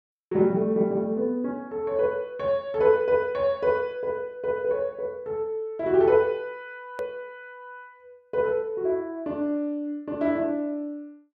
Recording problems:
edit click; at 7 s

